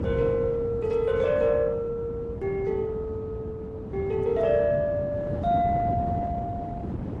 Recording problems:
codec artefacts; Opus, then AAC, log-spectral distance 2 dB
wind on the microphone; below 270 Hz, SNR 7 dB

